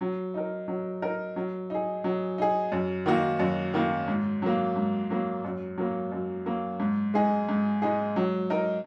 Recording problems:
none

